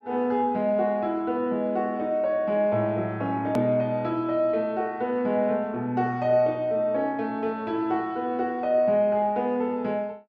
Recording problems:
click at an edit; at 3.5 s

